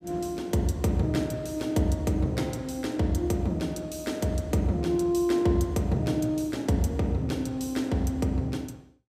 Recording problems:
none

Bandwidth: 15.5 kHz